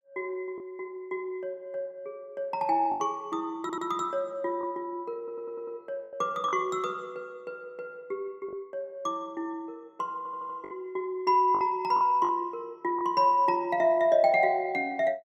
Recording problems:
packet loss; 4% of the sound replaced, filled with the last packet
stutter; at 3.5 s, at 5 s and at 10 s

